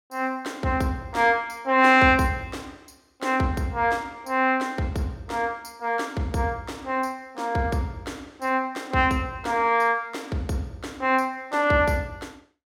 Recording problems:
none

